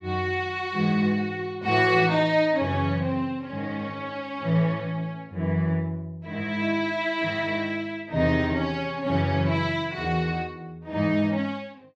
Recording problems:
none

